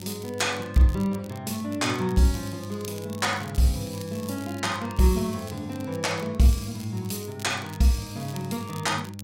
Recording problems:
mains hum; 50 Hz, harmonics up to 600 Hz, SNR 13 dB
crackle; vinyl, SNR 20 dB

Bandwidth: 16 kHz